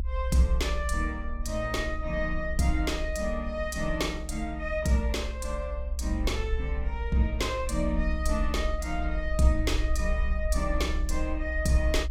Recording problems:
low-frequency rumble; below 62 Hz, SNR 3 dB

